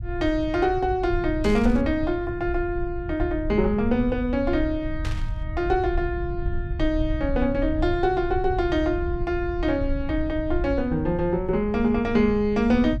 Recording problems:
rumble; below 84 Hz, SNR 8 dB
burst of static; at 1.5 s and at 5 s; peak -8 dB vs average level

